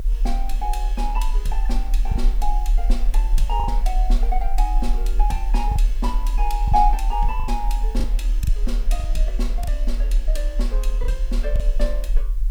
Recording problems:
hiss; slope -1 dB per octave, SNR 24 dB
rumble; below 40 Hz, strongest tone 38 Hz, SNR -5 dB
lost packets; 4% of the sound replaced, filled with the last packet

